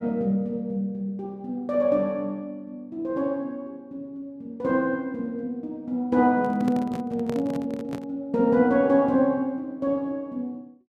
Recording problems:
handling noise; from 6.5 to 8 s; peak -4 dB vs average level

